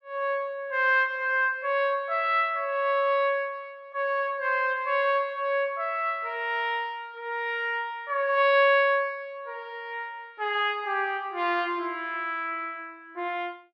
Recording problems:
none

